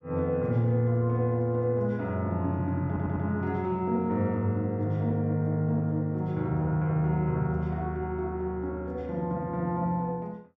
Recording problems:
audio stuttering; at 3 s

